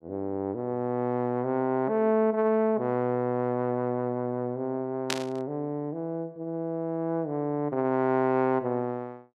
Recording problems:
burst of static; at 5 s; peak +2 dB vs average level

